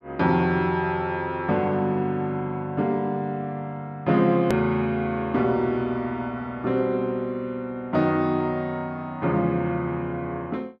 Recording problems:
click at an edit; at 4.5 s

